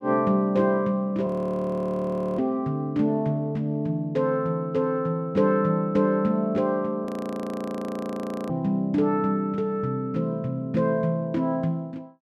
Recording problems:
frozen audio; at 1.5 s for 1 s and at 7 s for 1.5 s

